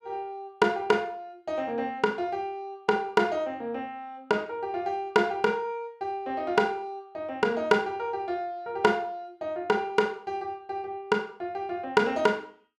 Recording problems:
none

